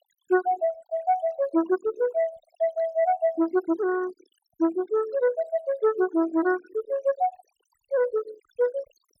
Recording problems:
denoising artefacts; signal-to-artefact ratio 19 dB

